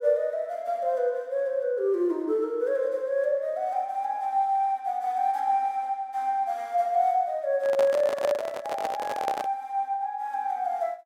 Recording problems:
microphone handling noise; from 7.5 to 9.5 s; peak +1 dB vs average level

